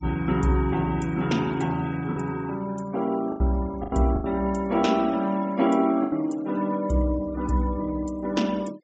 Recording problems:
treble cut off; nothing above 8 kHz
noise reduction artefacts; signal-to-artefact ratio 23 dB
lost packets; 4% of the sound replaced, filled with the last packet

